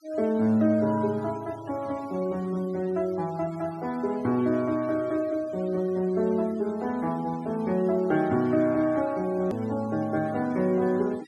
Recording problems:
noise reduction artefacts; signal-to-artefact ratio 23 dB
hard cut with a click; at 9.5 s

